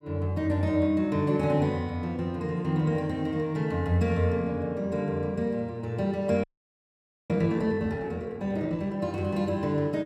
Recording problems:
audio freezing; at 6.5 s for 1 s

